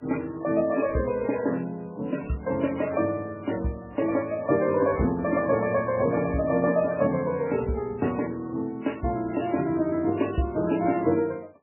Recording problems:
lossy codec; MP3, then MP3, log-spectral distance 4 dB, nothing above 2.7 kHz

